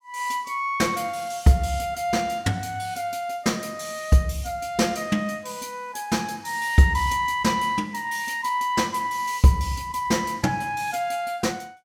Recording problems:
none

